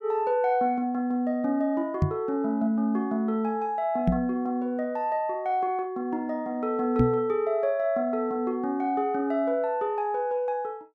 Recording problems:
microphone bump; at 2 s, at 4 s and at 7 s; peak +8 dB vs average level

